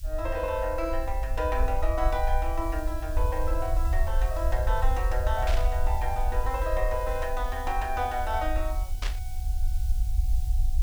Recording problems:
background hiss; SNR 17 dB
low-frequency rumble; below 58 Hz, SNR 0 dB
static burst; at 5.5 s and at 9 s; peak -1 dB vs average level

